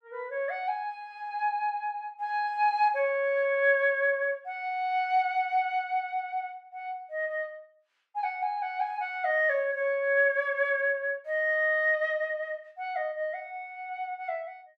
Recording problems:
none

